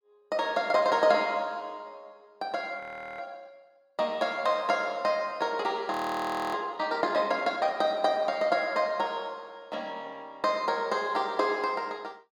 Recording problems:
audio freezing; at 3 s and at 6 s for 0.5 s

